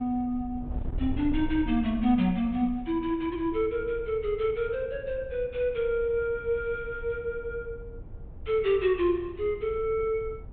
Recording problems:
treble missing; nothing above 4 kHz
wind on the microphone; below 84 Hz, SNR 14 dB

